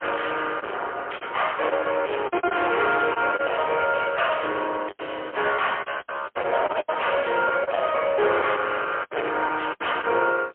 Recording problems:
phone line; 320 Hz to 3.2 kHz, AMR-NB, then MP3
distortion; soft clipping, signal-to-distortion ratio 7 dB
packet loss; 10% of the sound replaced, filled with the last packet

